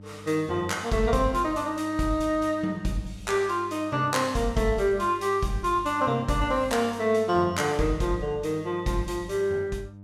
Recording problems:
hum; 50 Hz, harmonics up to 600 Hz, SNR 19 dB

